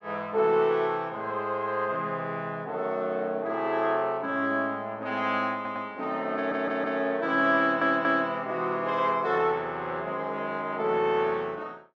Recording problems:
audio stuttering; at 5.5 s, at 6.5 s and at 7.5 s

